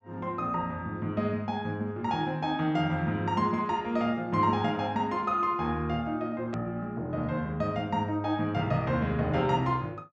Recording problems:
treble missing; nothing above 8 kHz
edit click; at 6.5 s

